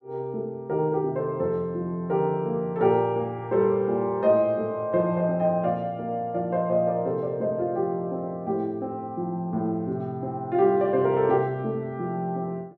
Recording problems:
none

